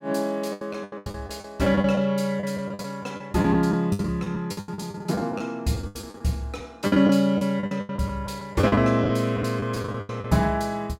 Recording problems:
packet loss; 18% of the sound replaced, filled with the last packet

